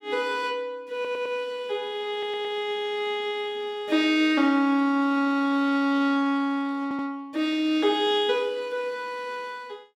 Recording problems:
audio stuttering; at 1 s, at 2 s and at 7 s

